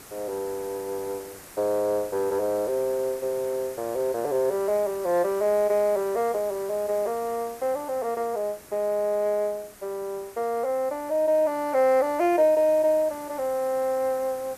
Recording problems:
hiss; slope -4 dB per octave, SNR 19 dB

